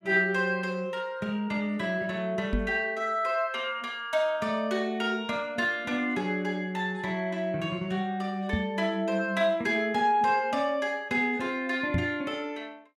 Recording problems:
microphone bump; at 2.5 s, at 8.5 s and at 12 s; peak +4 dB vs average level

